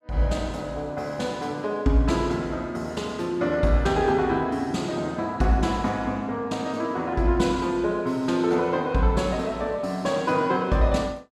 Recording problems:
none

